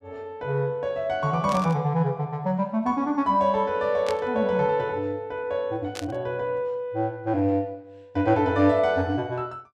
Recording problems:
static burst; at 1.5 s, at 4 s and at 6 s; peak -6 dB vs average level

